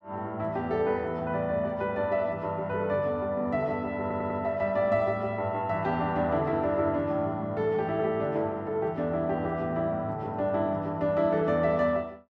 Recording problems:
stutter; at 4 s

